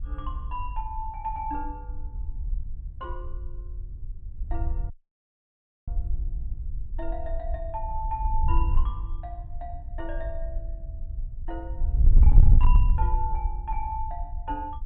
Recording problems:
low-pass filter; nothing above 4 kHz
distorted audio; hard clipping, uneven, signal-to-distortion ratio 11 dB
wind noise; below 60 Hz, SNR -7 dB
audio cutting out; at 5 s for 1 s

